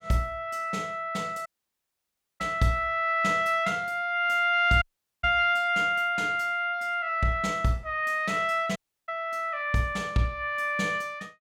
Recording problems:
dropout; at 1.5 s for 1 s, at 5 s and at 9 s

